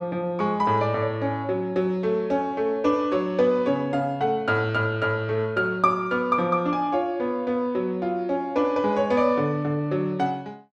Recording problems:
none

